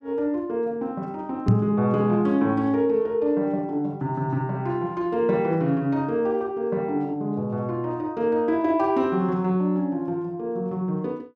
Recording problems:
knock on the microphone; at 1.5 s; peak +9 dB vs average level

